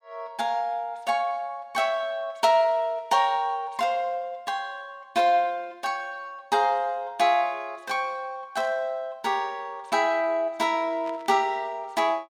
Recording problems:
static burst; at 8.5 s and at 11 s; peak -14 dB vs average level

